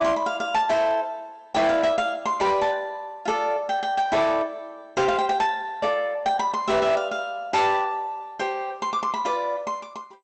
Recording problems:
lossy codec; MP2, log-spectral distance 2 dB, nothing above 7.8 kHz
distorted audio; hard clipping, signal-to-distortion ratio 12 dB

